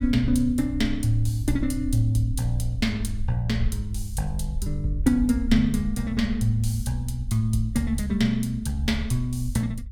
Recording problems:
rumble; below 64 Hz, SNR 9 dB

